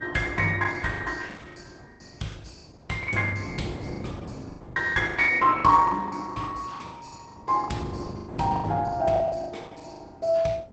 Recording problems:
lossy codec; Opus, log-spectral distance 4 dB, nothing above 8 kHz
wind noise; below 350 Hz, SNR 13 dB
packet loss; 15% of the sound replaced, filled with the last packet

